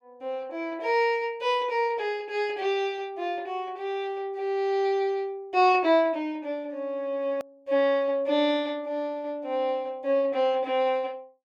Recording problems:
hard cut with a click; at 7.5 s

